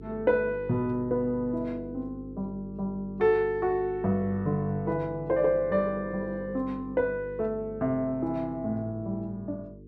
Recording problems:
hum; 50 Hz, harmonics up to 450 Hz, SNR 15 dB

